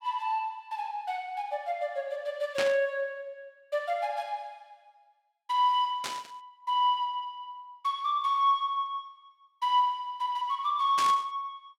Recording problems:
burst of static; at 2.5 s, at 6 s and at 11 s; peak +1 dB vs average level

